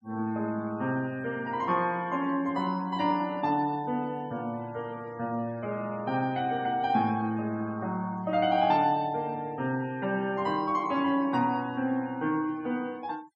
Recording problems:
denoising artefacts; signal-to-artefact ratio 24 dB

